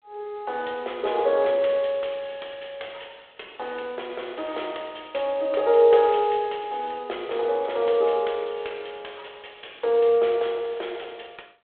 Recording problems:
telephone audio; 340 Hz to 3.6 kHz, G.726

